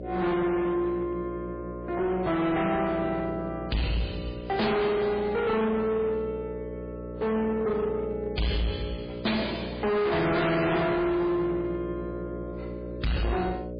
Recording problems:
lossy codec; MP3, log-spectral distance 3 dB, nothing above 4.5 kHz
distortion; hard clipping, signal-to-distortion ratio 6 dB
hum; 60 Hz, harmonics up to 600 Hz, SNR 10 dB

